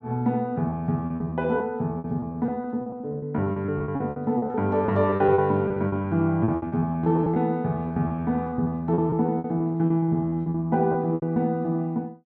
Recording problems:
lost packets; 17% of the sound replaced, filled with repeated pitch periods

